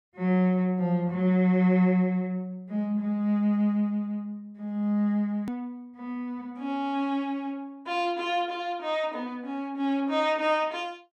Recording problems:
hard cut with a click; at 5.5 s

